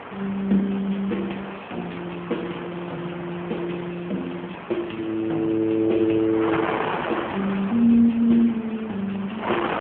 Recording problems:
phone line; 130 Hz to 3.4 kHz, AMR-NB
wind noise; below 1.7 kHz, SNR 9 dB

